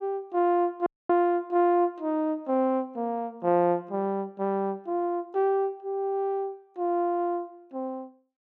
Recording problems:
dropout; at 1 s

